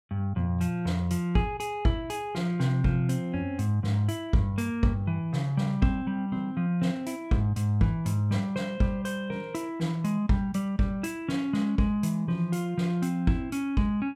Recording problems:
none

